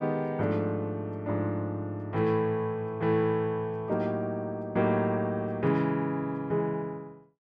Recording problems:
none

